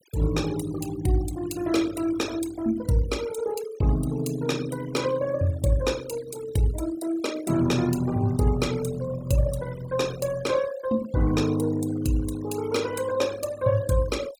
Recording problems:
denoising artefacts; signal-to-artefact ratio 15 dB

